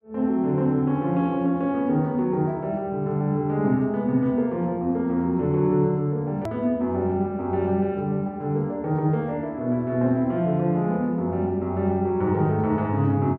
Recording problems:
edit click; at 6.5 s

